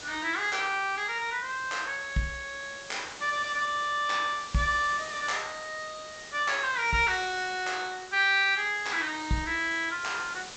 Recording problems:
treble missing; nothing above 8 kHz
hiss; slope -1 dB per octave, SNR 15 dB

